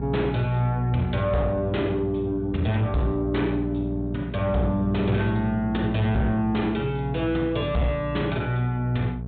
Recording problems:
treble missing; nothing above 4 kHz
distortion; soft clipping, signal-to-distortion ratio 11 dB
hum; 60 Hz, harmonics up to 660 Hz, SNR 8 dB

